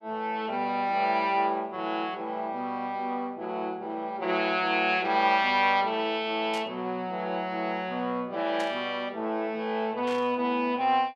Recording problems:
burst of static; at 6.5 s, at 8.5 s and at 10 s; peak -8 dB vs average level

